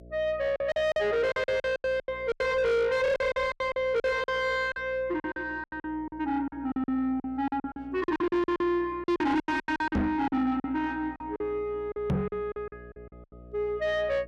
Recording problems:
distorted audio; soft clipping, signal-to-distortion ratio 7 dB
electrical hum; 60 Hz, harmonics up to 660 Hz, SNR 22 dB
packet loss; 16% of the sound replaced, filled with silence
microphone thump; at 10 s and at 12 s; peak +5 dB vs average level

